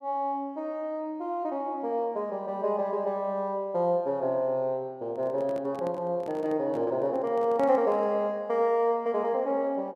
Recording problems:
handling noise; from 5 to 8 s; peak -9 dB vs average level

